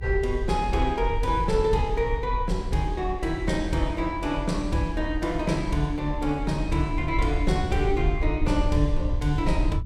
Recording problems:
rumble; below 62 Hz, SNR 5 dB

